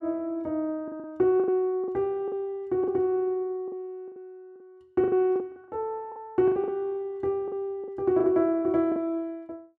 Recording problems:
packet loss; 10% of the sound replaced, filled with the last packet

